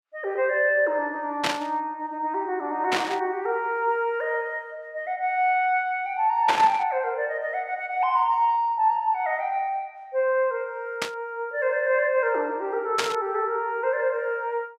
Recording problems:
static burst; 5 times, first at 1.5 s; peak +4 dB vs average level

